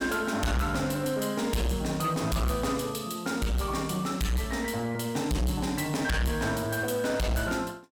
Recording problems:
distorted audio; soft clipping, signal-to-distortion ratio 7 dB

